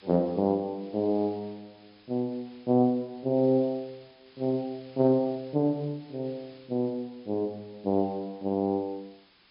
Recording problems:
treble missing; nothing above 5.5 kHz
background hiss; SNR 28 dB

